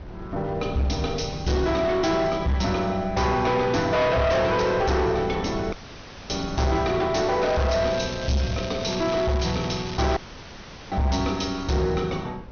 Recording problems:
treble cut off; nothing above 6.3 kHz
distorted audio; hard clipping, signal-to-distortion ratio 8 dB
wind noise; below 280 Hz, SNR 15 dB
audio cutting out; at 5.5 s for 0.5 s and at 10 s for 1 s
crackle; from 7.5 to 10 s; loose cable, SNR 14 dB

